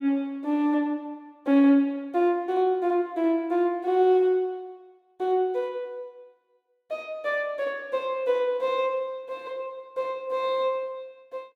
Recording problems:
none

